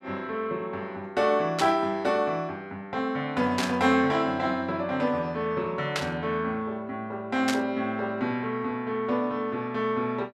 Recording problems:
burst of static; 4 times, first at 1.5 s; peak +3 dB vs average level

